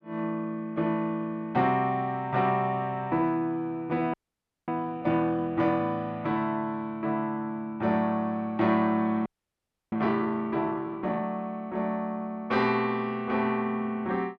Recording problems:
frozen audio; at 4 s for 0.5 s and at 9.5 s for 0.5 s

